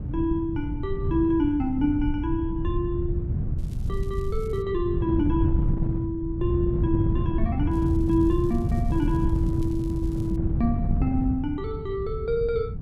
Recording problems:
low-frequency rumble; below 100 Hz, SNR 8 dB
wind on the microphone; below 150 Hz, SNR 1 dB
crackling; from 3.5 to 4.5 s and from 7.5 to 10 s; loose cable, SNR 28 dB

